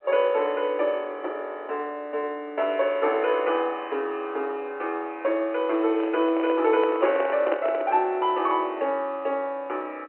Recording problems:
telephone audio; 280 Hz to 3.1 kHz, G.711
microphone handling noise; from 6 to 8 s; peak +1 dB vs average level

